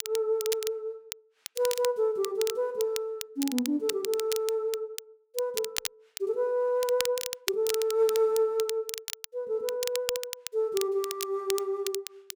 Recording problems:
crackle; vinyl, SNR 8 dB

